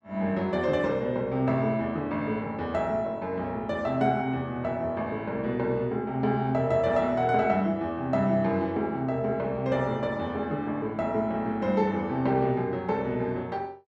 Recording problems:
none

